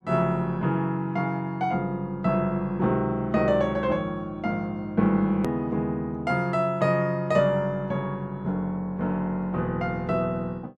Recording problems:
click at an edit; at 5.5 s

